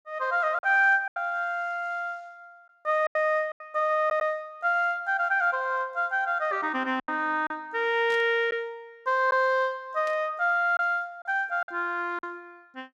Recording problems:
lost packets; 5% of the sound replaced, filled with silence
burst of static; at 8 s and at 10 s; peak -13 dB vs average level

